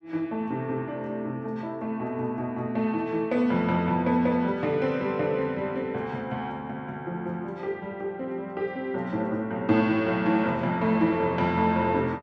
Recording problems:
none

